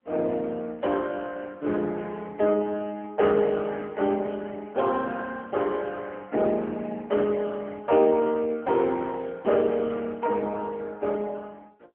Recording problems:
telephone audio; 170 Hz to 3.2 kHz, AMR-NB

